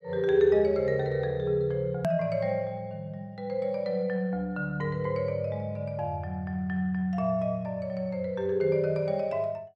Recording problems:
click at an edit; at 2 s

